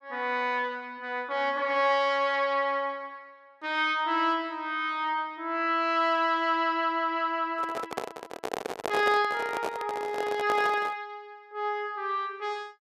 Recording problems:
handling noise; from 7.5 to 11 s; peak 0 dB vs average level

